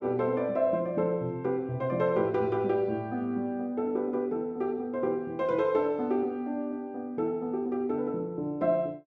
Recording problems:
none

